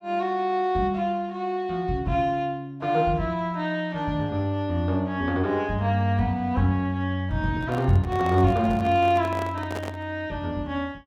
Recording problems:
handling noise; from 7.5 to 10 s; peak -5 dB vs average level

